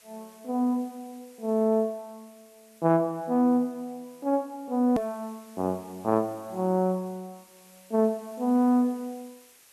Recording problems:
hiss; slope 0 dB per octave, SNR 27 dB
edit click; at 5 s

